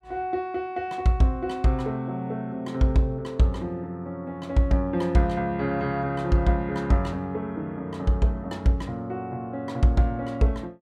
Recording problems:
none

